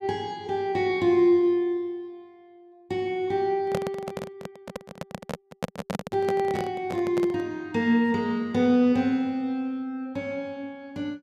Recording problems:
handling noise; from 3.5 to 7.5 s; peak +1 dB vs average level

